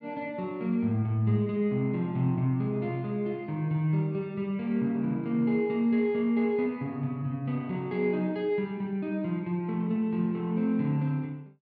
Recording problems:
none

